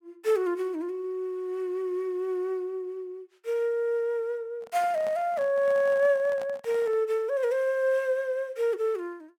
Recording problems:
handling noise; from 4.5 to 7 s; peak -10 dB vs average level

